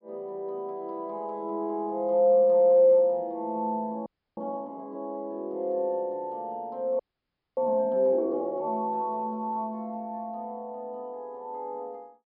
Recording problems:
treble missing; nothing above 5.5 kHz
audio freezing; at 4 s and at 7 s for 0.5 s

